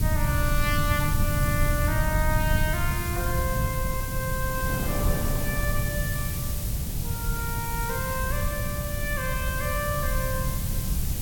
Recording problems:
background hiss; slope +3 dB per octave, SNR 3 dB
rumble; below 130 Hz, SNR -1 dB
wind noise; below 300 Hz, SNR 8 dB

